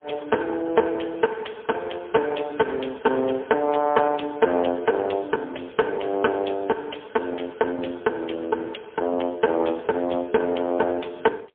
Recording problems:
telephone audio; 220 Hz to 3.4 kHz, AMR-NB, then MP3
distorted audio; hard clipping, uneven, signal-to-distortion ratio 12 dB

